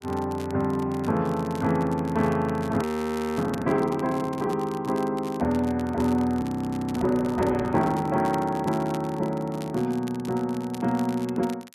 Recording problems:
crackle; vinyl, SNR 21 dB
frozen audio; at 3 s for 0.5 s and at 6.5 s for 0.5 s

